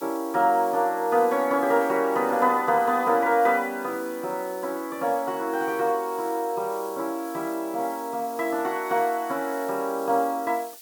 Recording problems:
background hiss; slope +4 dB per octave, SNR 19 dB

